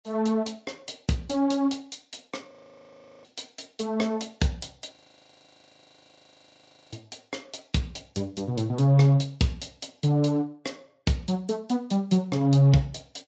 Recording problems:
lossy codec; Speex, then MP3, log-spectral distance 5 dB, nothing above 7.6 kHz
frozen audio; at 2.5 s for 0.5 s and at 5 s for 2 s

